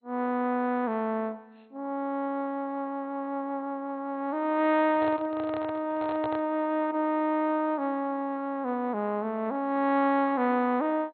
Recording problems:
codec artefacts; MP2, log-spectral distance 2 dB, nothing above 4 kHz
microphone handling noise; from 5 to 6.5 s; peak -5 dB vs average level

